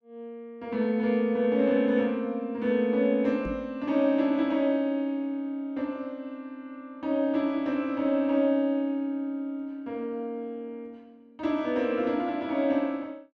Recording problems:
microphone thump; at 3.5 s; peak -2 dB vs average level

